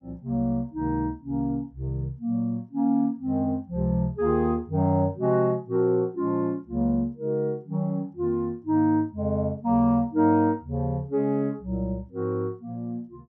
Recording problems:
none

